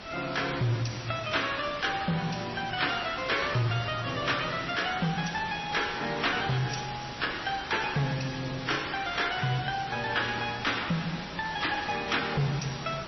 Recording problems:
lossy codec; AAC, then MP3, log-spectral distance 12 dB, nothing above 5.8 kHz
distortion; soft clipping, signal-to-distortion ratio 10 dB
background hiss; slope -3 dB per octave, SNR 9 dB

